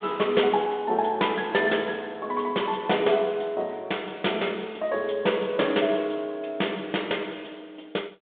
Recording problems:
telephone audio; 240 Hz to 3.7 kHz, G.726

